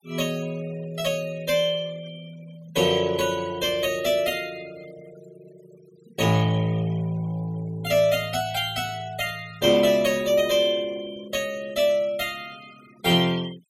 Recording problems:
noise reduction artefacts; signal-to-artefact ratio 21 dB

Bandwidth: 16 kHz